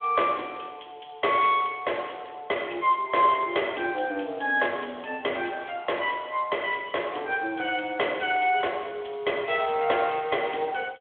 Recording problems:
telephone audio; 260 Hz to 3.4 kHz, Speex

